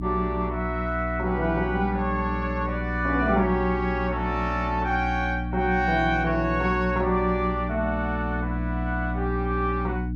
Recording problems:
hum; 60 Hz, harmonics up to 300 Hz, SNR 4 dB

